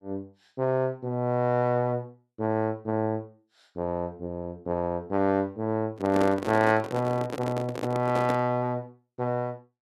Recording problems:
microphone handling noise; from 6 to 8.5 s; peak +1 dB vs average level

